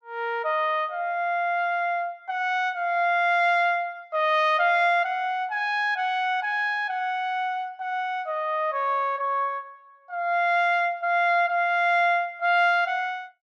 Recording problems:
none

